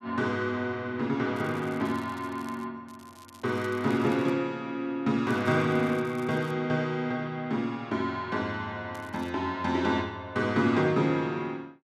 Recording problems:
crackling; 4 times, first at 1.5 s; loose cable, SNR 26 dB

